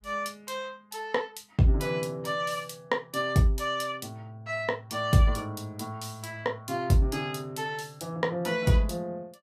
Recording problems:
none

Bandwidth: 14.5 kHz